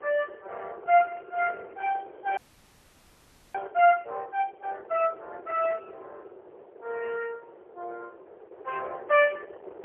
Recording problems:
telephone audio; 370 Hz to 3.3 kHz, AMR-NB, then MP3
wind on the microphone; below 600 Hz, SNR 20 dB
audio freezing; at 2.5 s for 1 s

